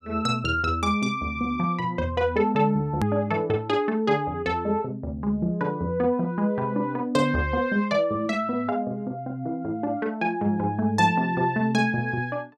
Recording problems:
click at an edit; at 3 s

